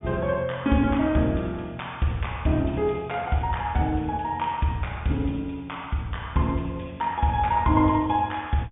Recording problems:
treble cut off; nothing above 3.6 kHz

